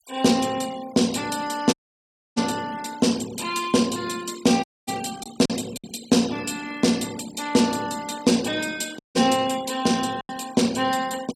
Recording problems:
noise reduction artefacts; signal-to-artefact ratio 17 dB
lost packets; 2% of the sound replaced, filled with silence
audio cutting out; at 1.5 s for 0.5 s, at 4.5 s and at 9 s

